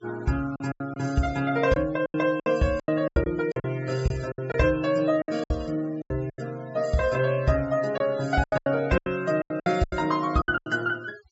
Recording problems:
treble missing; nothing above 8 kHz
noise reduction artefacts; signal-to-artefact ratio 21 dB
lost packets; 14% of the sound replaced, filled with silence

